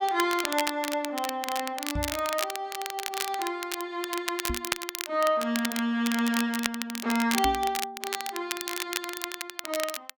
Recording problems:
crackling; vinyl, SNR 4 dB
microphone bump; at 2 s, at 4.5 s and at 7.5 s; peak 0 dB vs average level

